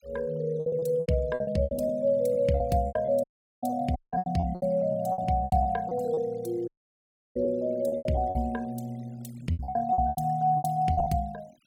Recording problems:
denoising artefacts; signal-to-artefact ratio 25 dB
packet loss; 15% of the sound replaced, filled with repeated pitch periods
dropout; at 3 s, at 4 s and at 6.5 s for 0.5 s

